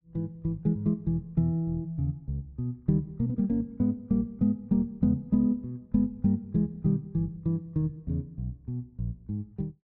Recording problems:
none

